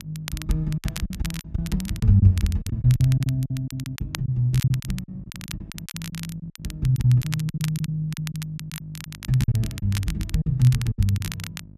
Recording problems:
electrical hum; 50 Hz, harmonics up to 600 Hz, SNR 20 dB
crackling; vinyl, SNR 15 dB
lost packets; 13% of the sound replaced, filled with silence

